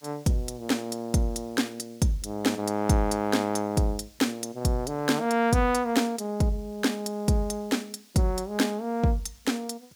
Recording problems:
hiss; slope +2 dB per octave, SNR 28 dB

